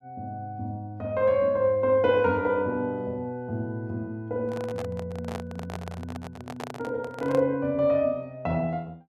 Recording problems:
microphone handling noise; from 4.5 to 7.5 s; peak -5 dB vs average level

